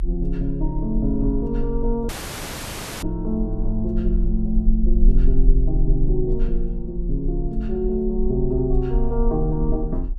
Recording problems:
low-frequency rumble; below 42 Hz, strongest tone 22 Hz, SNR 1 dB
dropout; at 2 s for 1 s

